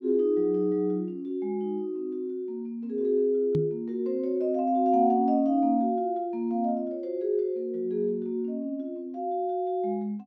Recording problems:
microphone thump; at 3.5 s; peak +2 dB vs average level

